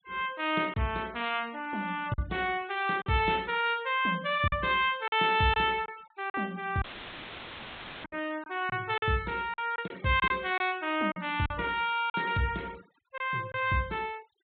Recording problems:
treble missing; nothing above 4 kHz
denoising artefacts; signal-to-artefact ratio 24 dB
packet loss; 5% of the sound replaced, filled with silence
audio cutting out; at 7 s for 1 s; filled with static

